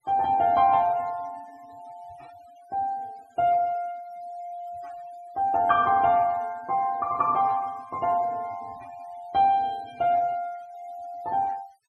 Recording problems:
noise reduction artefacts; signal-to-artefact ratio 27 dB

